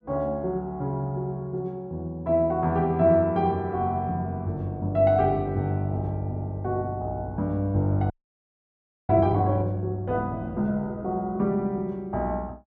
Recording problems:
audio freezing; at 8 s for 1 s

